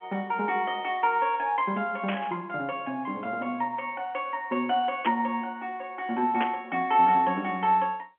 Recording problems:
telephone audio; 220 Hz to 3.3 kHz, G.711
static burst; at 2 s, at 5 s and at 6.5 s; peak 0 dB vs average level

